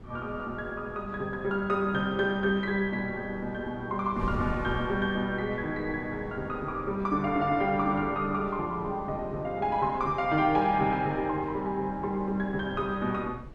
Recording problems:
wind noise; below 190 Hz, SNR 15 dB

